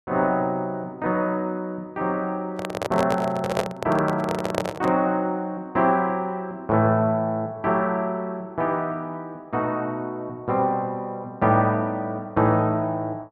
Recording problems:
handling noise; from 2.5 to 5 s; peak +4 dB vs average level

